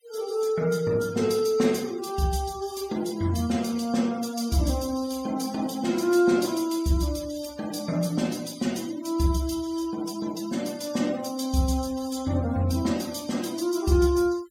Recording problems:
denoising artefacts; signal-to-artefact ratio 19 dB

